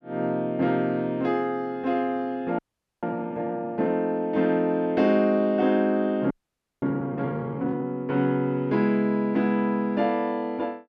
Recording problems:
audio freezing; at 2.5 s and at 6.5 s for 0.5 s

